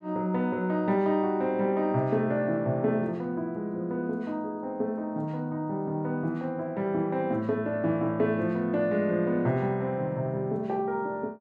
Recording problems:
none

